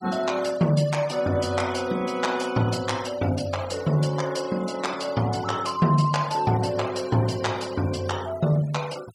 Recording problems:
noise reduction artefacts; signal-to-artefact ratio 17 dB

